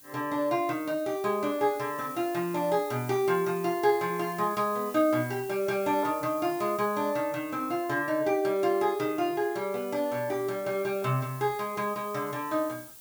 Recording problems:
background hiss; SNR 17 dB

